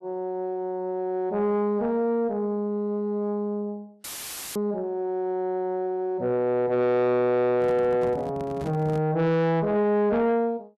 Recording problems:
distortion; soft clipping, signal-to-distortion ratio 11 dB
dropout; at 4 s for 0.5 s; filled with static
handling noise; from 7.5 to 9 s; peak -5 dB vs average level

